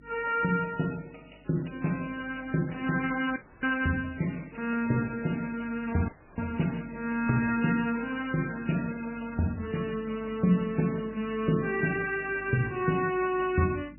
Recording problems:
lossy compression; MP3, log-spectral distance 7 dB, nothing above 2.4 kHz
hum; 50 Hz, harmonics up to 300 Hz, SNR 22 dB
audio cutting out; at 3.5 s and at 6 s

